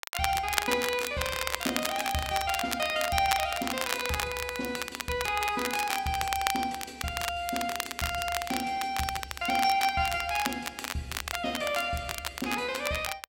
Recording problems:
crackle; vinyl, SNR 4 dB

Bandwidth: 16 kHz